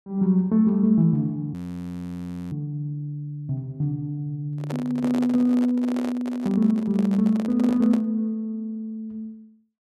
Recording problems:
frozen audio; at 1.5 s for 1 s
microphone handling noise; from 4.5 to 8 s; peak -6 dB vs average level

